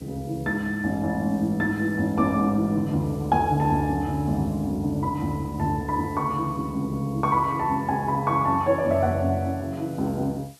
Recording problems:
background hiss; slope +2 dB per octave, SNR 27 dB

